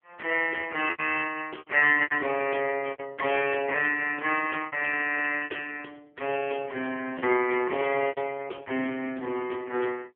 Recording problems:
phone line; 320 Hz to 3.1 kHz, AMR-NB
packet loss; 7% of the sound replaced, filled with repeated pitch periods

